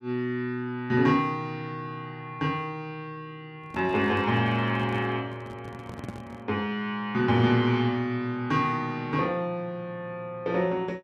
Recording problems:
microphone handling noise; from 3.5 to 6.5 s; peak -5 dB vs average level

